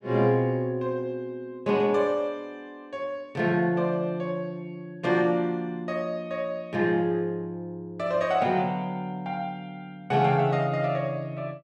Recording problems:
none

